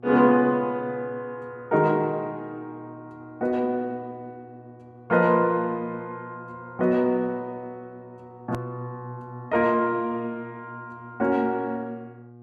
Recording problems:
hum; 60 Hz, harmonics up to 840 Hz, SNR 22 dB
edit click; at 8.5 s

